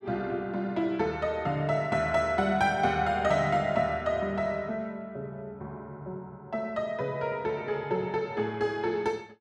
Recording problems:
none

